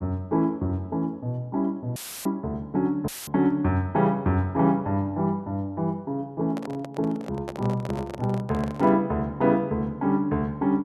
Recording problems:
audio cutting out; at 2 s and at 3 s; filled with static
microphone handling noise; from 6.5 to 9 s; peak -5 dB vs average level

